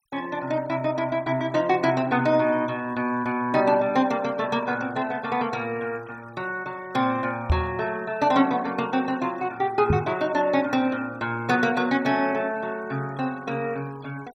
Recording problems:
denoising artefacts; signal-to-artefact ratio 23 dB
microphone bump; at 7.5 s and at 10 s; peak +6 dB vs average level

